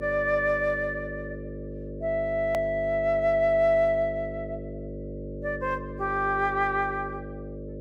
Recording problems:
electrical hum; 50 Hz, harmonics up to 600 Hz, SNR 11 dB
hard cut with a click; at 2.5 s

